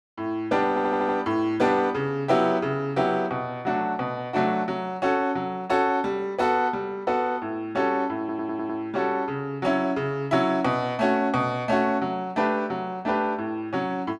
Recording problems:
audio stuttering; at 0.5 s and at 8 s

